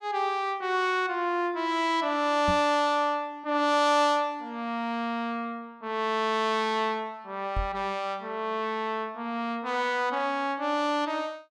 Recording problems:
microphone thump; at 2.5 s and at 7.5 s; peak -1 dB vs average level

